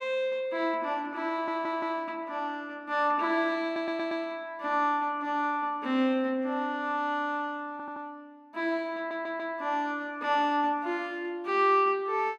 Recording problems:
audio stuttering; 4 times, first at 1.5 s

